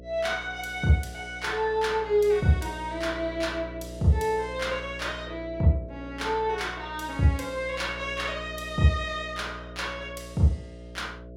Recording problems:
hum; 60 Hz, harmonics up to 660 Hz, SNR 14 dB

